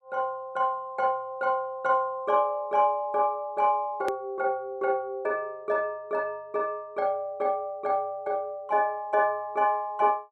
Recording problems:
edit click; at 4 s

